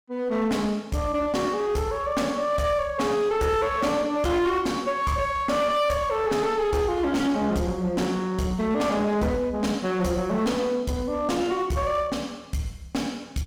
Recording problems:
distortion; hard clipping, uneven, signal-to-distortion ratio 9 dB

